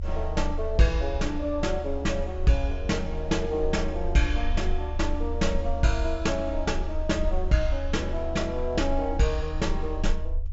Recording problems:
treble cut off; nothing above 8 kHz
low-frequency rumble; below 72 Hz, strongest tone 24 Hz, SNR 5 dB

